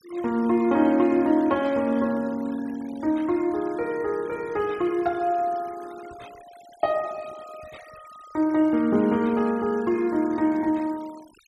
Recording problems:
denoising artefacts; signal-to-artefact ratio 23 dB

